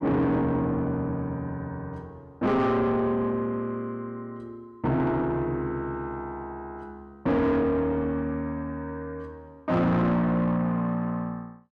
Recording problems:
distorted audio; soft clipping, signal-to-distortion ratio 7 dB

